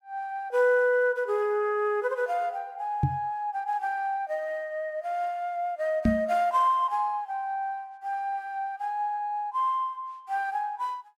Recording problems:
knock on the microphone; at 3 s and at 6 s; peak +7 dB vs average level

